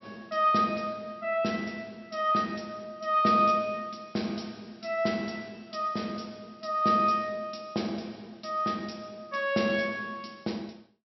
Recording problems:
treble cut off; nothing above 5.7 kHz

